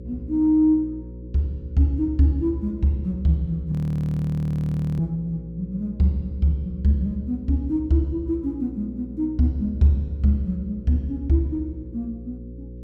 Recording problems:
electrical hum; 60 Hz, harmonics up to 540 Hz, SNR 15 dB
frozen audio; at 3.5 s for 1.5 s

